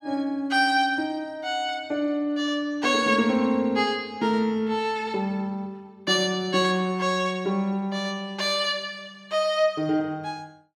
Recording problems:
none

